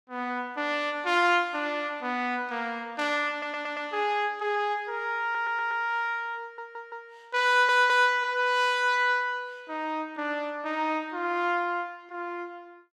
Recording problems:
audio stuttering; 4 times, first at 3.5 s

